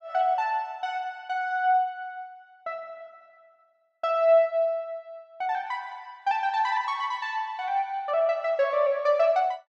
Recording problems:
none

